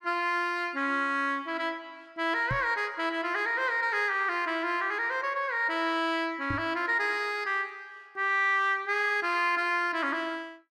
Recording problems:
microphone thump; at 2.5 s and at 6.5 s; peak -2 dB vs average level

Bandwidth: 14.5 kHz